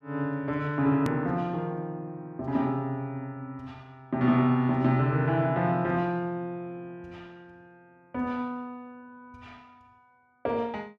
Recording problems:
edit click; at 1 s

